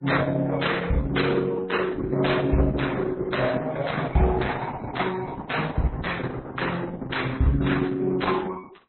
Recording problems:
codec artefacts; Opus, then MP3, log-spectral distance 5 dB, nothing above 4.1 kHz

